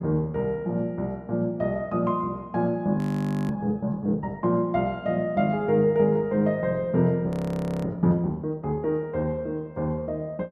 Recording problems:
frozen audio; at 3 s for 0.5 s and at 7.5 s for 0.5 s

